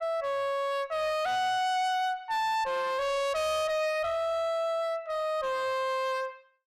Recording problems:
distortion; hard clipping, signal-to-distortion ratio 7 dB

